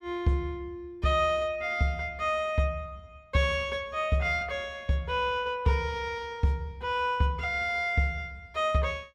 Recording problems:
none

